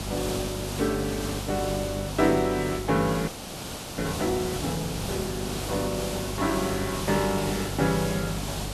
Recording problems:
hum; 50 Hz, harmonics up to 950 Hz, SNR 8 dB
background hiss; SNR 5 dB
frozen audio; at 3.5 s for 0.5 s

